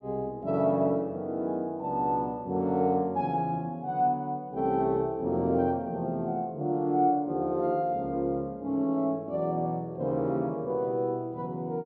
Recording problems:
none

